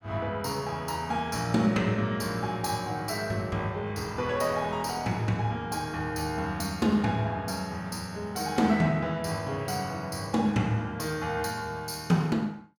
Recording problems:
none

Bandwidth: 17.5 kHz